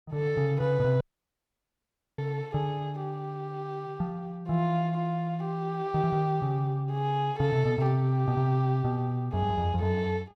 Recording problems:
dropout; at 1 s for 1 s

